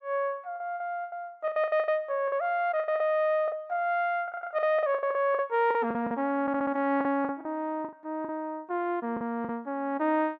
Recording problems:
packet loss; 13% of the sound replaced, filled with the last packet
stutter; at 4 s and at 6.5 s

